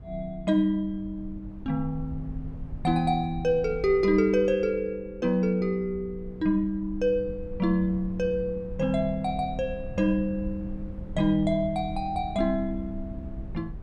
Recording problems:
rumble; below 92 Hz, SNR 14 dB

